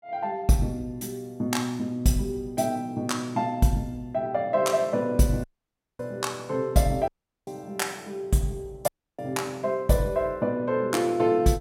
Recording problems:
dropout; at 5.5 s for 0.5 s, at 7 s and at 9 s

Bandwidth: 16 kHz